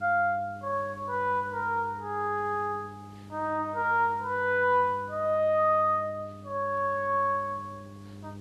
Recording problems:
hum; 50 Hz, harmonics up to 800 Hz, SNR 18 dB
hiss; slope -4 dB per octave, SNR 29 dB

